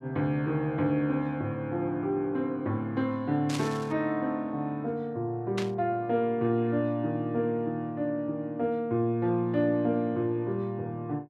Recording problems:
burst of static; at 3.5 s and at 5.5 s; peak -2 dB vs average level

